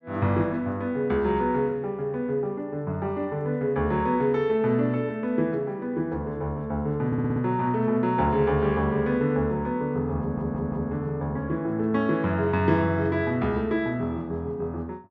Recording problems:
stutter; at 7 s and at 10 s

